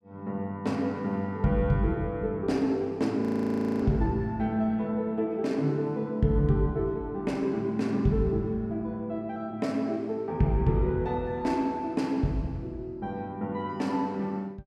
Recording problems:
audio freezing; at 3 s for 0.5 s

